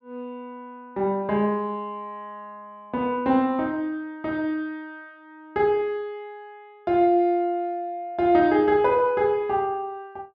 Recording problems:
none

